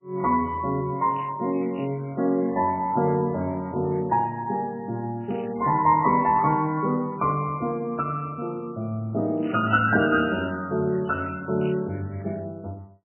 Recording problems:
lossy compression; MP3, log-spectral distance 8 dB, nothing above 2.7 kHz
crackle; from 1 to 4 s, at 5.5 s and from 9.5 to 12 s; loose cable, SNR 22 dB

